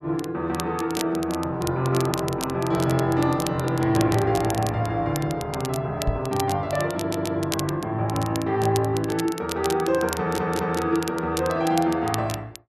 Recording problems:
crackling; vinyl, SNR 12 dB
knock on the microphone; at 6 s; peak +3 dB vs average level
audio stuttering; at 7 s and at 10 s

